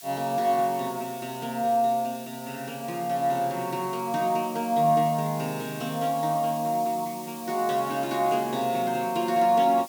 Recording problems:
hiss; slope +6 dB per octave, SNR 16 dB

